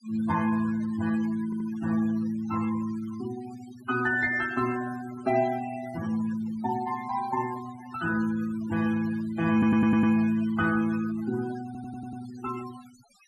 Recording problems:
denoising artefacts; signal-to-artefact ratio 16 dB
audio stuttering; at 1.5 s, at 9.5 s and at 12 s

